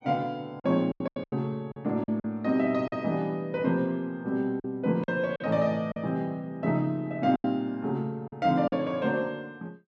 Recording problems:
lost packets; 8% of the sound replaced, filled with silence

